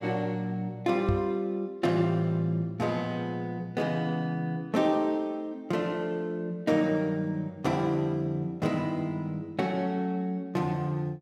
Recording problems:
microphone bump; at 1 s; peak +4 dB vs average level

